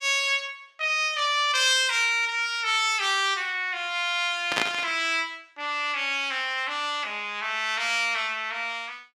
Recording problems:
burst of static; at 4.5 s; peak +3 dB vs average level

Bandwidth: 14.5 kHz